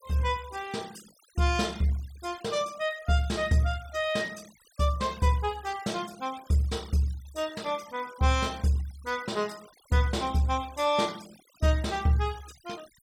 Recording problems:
noise reduction artefacts; signal-to-artefact ratio 20 dB

